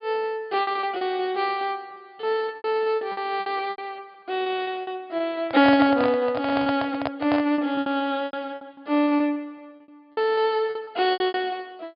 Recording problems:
treble missing; nothing above 5 kHz
lost packets; 13% of the sound replaced, filled with repeated pitch periods
microphone handling noise; from 5.5 to 7.5 s; peak +2 dB vs average level

